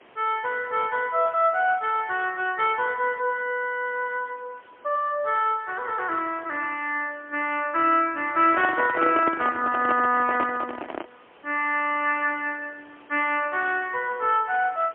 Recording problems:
telephone audio; 260 Hz to 3.3 kHz, AMR-NB, then MP3
background hiss; SNR 28 dB
microphone handling noise; from 8.5 to 11 s; peak 0 dB vs average level

